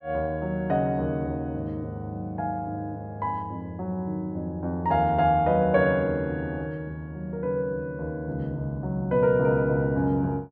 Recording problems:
none

